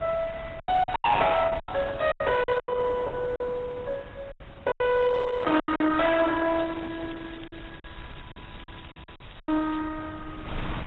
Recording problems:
lossy compression; AAC, then Opus, log-spectral distance 8 dB
distorted audio; hard clipping, uneven, signal-to-distortion ratio 11 dB
wind noise; below 940 Hz, SNR 18 dB
lost packets; 10% of the sound replaced, filled with silence
crackling; at 1.5 s and from 6.5 to 10 s; loose cable, SNR 25 dB

